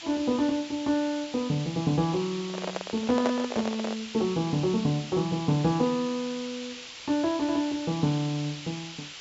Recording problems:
treble cut off; nothing above 8 kHz
hiss; SNR 12 dB
handling noise; from 2.5 to 4 s; peak +3 dB vs average level

